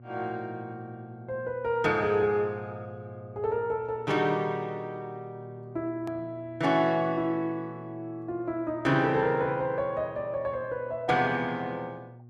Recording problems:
electrical hum; 60 Hz, harmonics up to 720 Hz, SNR 18 dB
edit click; at 6 s

